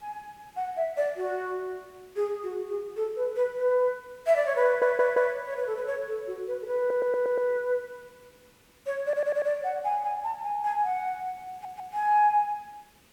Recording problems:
background hiss; slope -3 dB per octave, SNR 30 dB
audio stuttering; 4 times, first at 4.5 s

